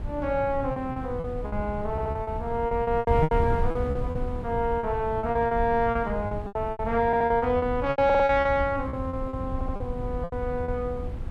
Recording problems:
wind on the microphone; below 150 Hz, SNR 7 dB
packet loss; 15% of the sound replaced, filled with repeated pitch periods
audio stuttering; 4 times, first at 2 s

